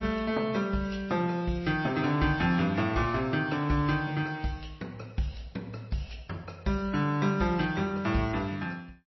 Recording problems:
lossy compression; MP3, log-spectral distance 3 dB, nothing above 5.7 kHz

